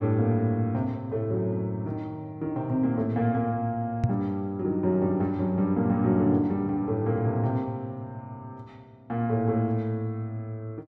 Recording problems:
microphone bump; at 4 s; peak +7 dB vs average level

